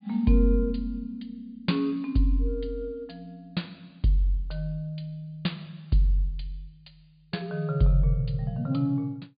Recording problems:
treble cut off; nothing above 4.8 kHz

